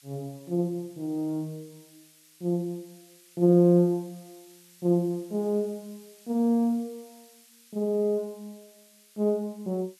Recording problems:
hiss; SNR 27 dB

